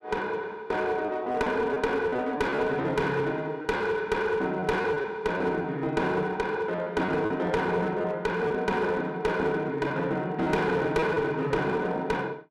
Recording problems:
distortion; hard clipping, uneven, signal-to-distortion ratio 11 dB
lost packets; 5% of the sound replaced, filled with repeated pitch periods

